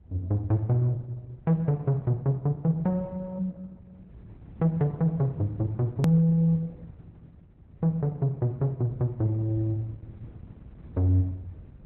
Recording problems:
codec artefacts; Opus, log-spectral distance 2 dB, nothing above 13.1 kHz
rumble; below 130 Hz, SNR 19 dB
hard cut with a click; at 6 s

